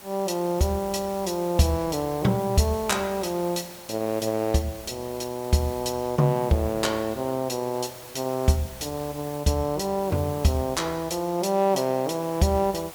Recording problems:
background hiss; SNR 17 dB

